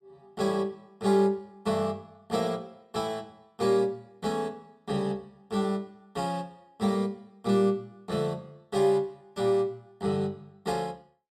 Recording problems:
none

